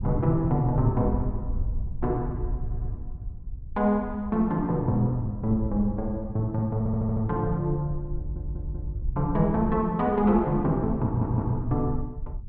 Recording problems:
treble missing; nothing above 5.3 kHz
low-frequency rumble; below 78 Hz, SNR 10 dB
audio stuttering; 4 times, first at 2.5 s

